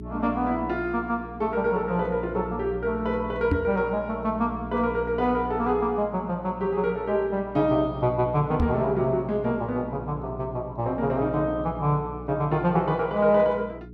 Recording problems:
hum; 60 Hz, harmonics up to 420 Hz, SNR 13 dB
microphone thump; at 3.5 s and at 8.5 s; peak +5 dB vs average level

